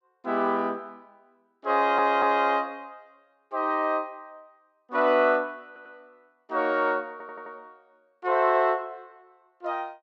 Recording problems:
audio stuttering; at 2 s, at 5.5 s and at 7 s

